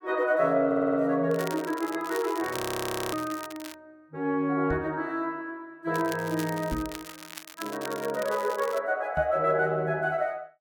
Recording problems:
audio stuttering; at 0.5 s
crackling; from 1.5 to 4 s and from 6 to 9 s; loose cable, SNR 13 dB
audio freezing; at 2.5 s for 0.5 s
knock on the microphone; at 4.5 s, at 6.5 s and at 9 s; peak -2 dB vs average level

